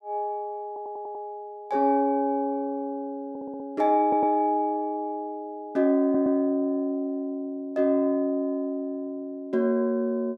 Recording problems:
audio stuttering; 4 times, first at 0.5 s

